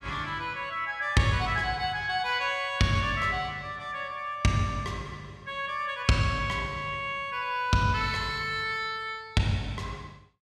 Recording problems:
none

